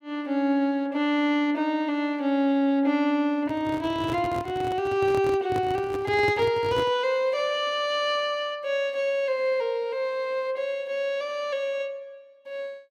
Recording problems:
handling noise; from 3.5 to 7 s; peak -2 dB vs average level

